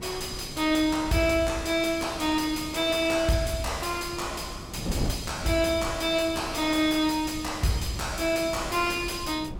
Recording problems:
distortion; soft clipping, signal-to-distortion ratio 9 dB
wind noise; below 270 Hz, SNR 12 dB

